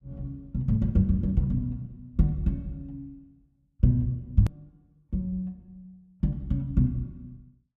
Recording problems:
edit click; at 4.5 s

